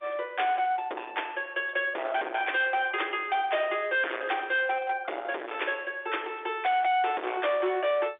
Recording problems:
telephone audio; 300 Hz to 3.6 kHz, G.711
distortion; hard clipping, uneven, signal-to-distortion ratio 5 dB

